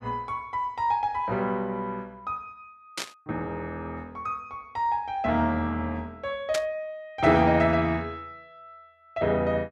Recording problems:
burst of static; at 3 s and at 6.5 s; peak +1 dB vs average level

